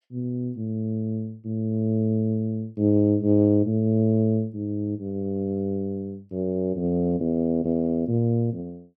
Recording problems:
none

